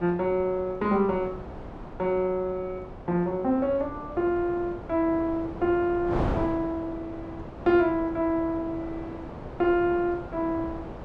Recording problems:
wind noise; below 670 Hz, SNR 11 dB

